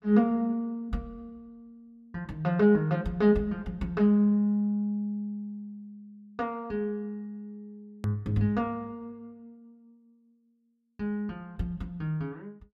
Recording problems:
hard cut with a click; at 8 s

